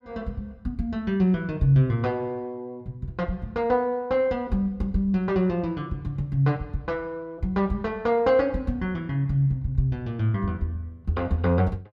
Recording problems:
none

